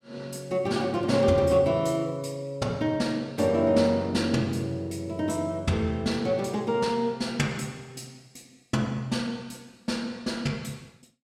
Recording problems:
none

